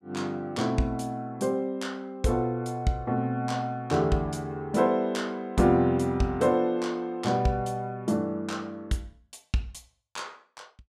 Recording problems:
none

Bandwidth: 14.5 kHz